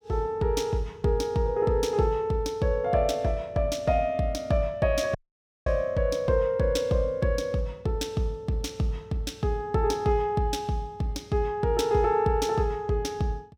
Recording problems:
dropout; at 5 s for 0.5 s

